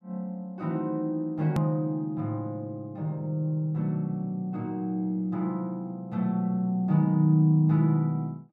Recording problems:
click at an edit; at 1.5 s

